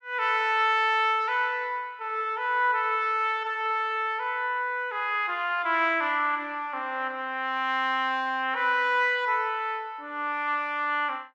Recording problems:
none

